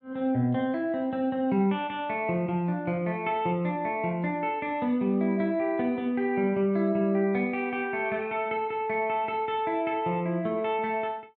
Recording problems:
none

